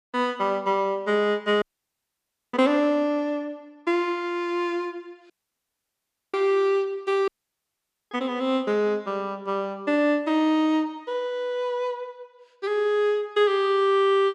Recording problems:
dropout; at 1.5 s for 1 s, at 5.5 s for 1 s and at 7.5 s for 1 s

